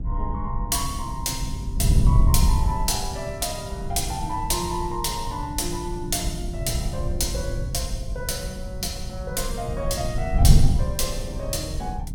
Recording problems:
wind on the microphone; below 120 Hz, SNR -1 dB

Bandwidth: 17 kHz